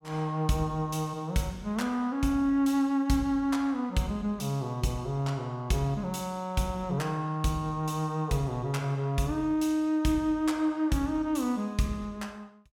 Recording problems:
none

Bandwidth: 17.5 kHz